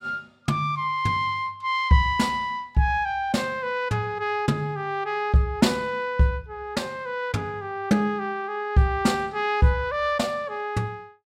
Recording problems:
none

